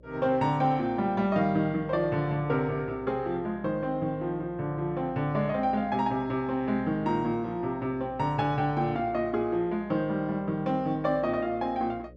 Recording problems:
mains hum; 60 Hz, harmonics up to 600 Hz, SNR 23 dB

